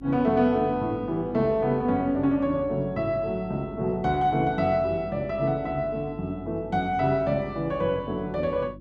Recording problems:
hum; 50 Hz, harmonics up to 350 Hz, SNR 18 dB

